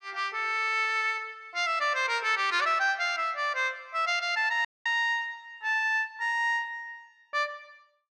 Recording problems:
audio cutting out; at 4.5 s

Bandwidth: 12.5 kHz